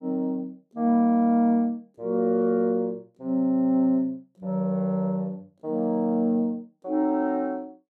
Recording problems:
none

